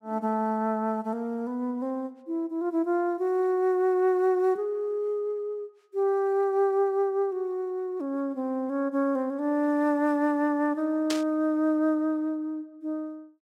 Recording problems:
burst of static; at 11 s; peak 0 dB vs average level

